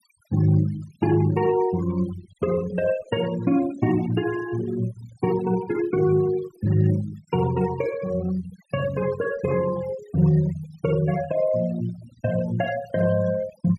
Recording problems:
noise reduction artefacts; signal-to-artefact ratio 17 dB

